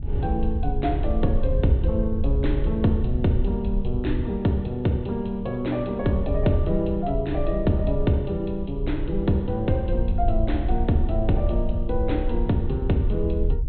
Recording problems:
low-pass filter; nothing above 4 kHz
wind on the microphone; below 66 Hz, SNR 3 dB

